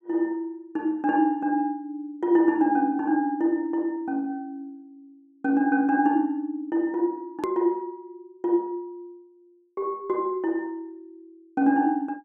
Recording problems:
click at an edit; at 7.5 s

